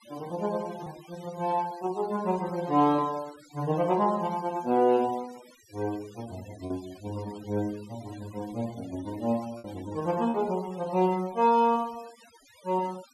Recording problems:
denoising artefacts; signal-to-artefact ratio 21 dB
packet loss; 1.5% of the sound replaced, filled with repeated pitch periods

